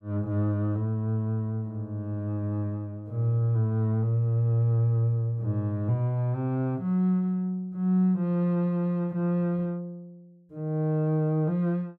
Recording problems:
none

